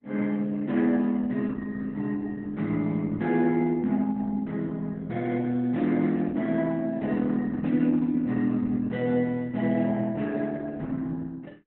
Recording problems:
codec artefacts; Opus, log-spectral distance 3 dB, nothing above 3.6 kHz

